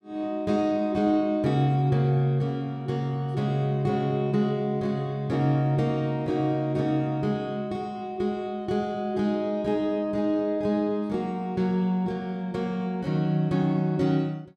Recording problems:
none

